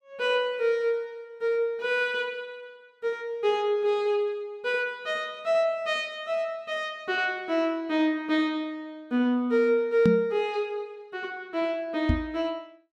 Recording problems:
microphone bump; at 10 s and at 12 s; peak +7 dB vs average level

